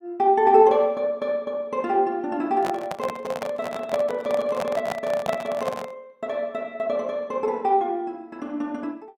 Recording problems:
microphone handling noise; from 2.5 to 6 s; peak -1 dB vs average level

